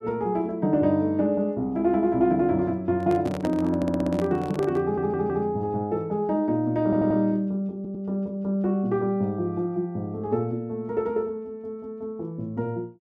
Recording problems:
handling noise; from 3 to 5.5 s; peak -2 dB vs average level
stutter; 4 times, first at 4 s

